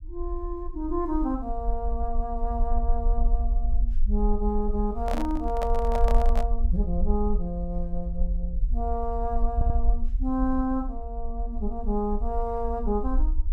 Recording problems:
low-frequency rumble; below 48 Hz, strongest tone 22 Hz, SNR 0 dB
microphone handling noise; from 5 to 6.5 s; peak +1 dB vs average level
stutter; at 9.5 s

